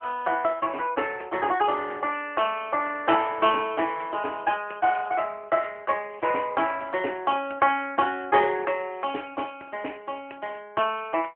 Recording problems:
telephone audio; 280 Hz to 3.1 kHz, AMR-NB

